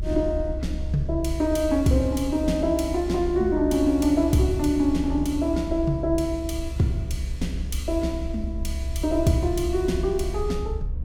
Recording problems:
hum; 50 Hz, harmonics up to 2.3 kHz, SNR 28 dB
rumble; below 68 Hz, strongest tone 66 Hz, SNR 7 dB

